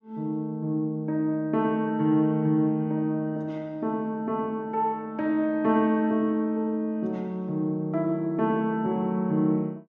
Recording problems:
none

